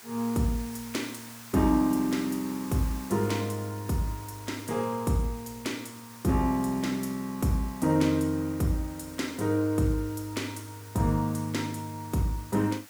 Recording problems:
background hiss; SNR 17 dB

